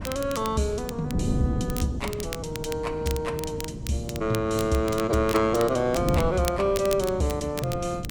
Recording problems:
wind noise; below 240 Hz, SNR 7 dB
crackle; vinyl, SNR 13 dB

